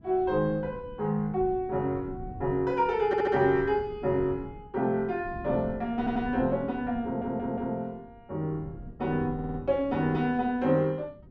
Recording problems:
wind noise; below 220 Hz, SNR 17 dB
audio stuttering; 4 times, first at 3 s

